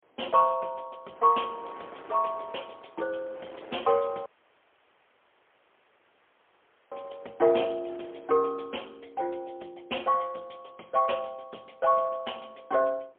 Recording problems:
telephone audio; 300 Hz to 3.3 kHz, AMR-NB, then MP3
wind on the microphone; below 1.2 kHz, SNR 21 dB
audio cutting out; at 4 s for 2.5 s

